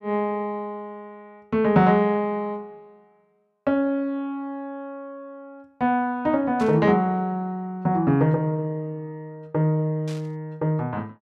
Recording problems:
static burst; at 6.5 s and at 10 s; peak -14 dB vs average level

